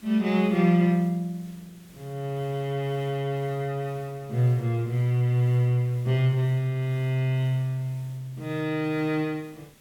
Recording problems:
background hiss; SNR 27 dB

